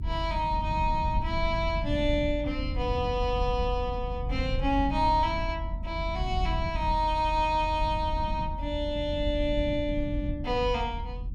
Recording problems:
rumble; below 94 Hz, strongest tone 44 Hz, SNR 5 dB

